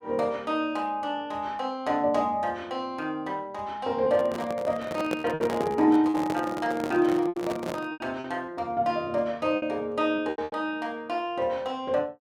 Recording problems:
lost packets; 5% of the sound replaced, filled with repeated pitch periods
microphone handling noise; from 4 to 8 s; peak +1 dB vs average level

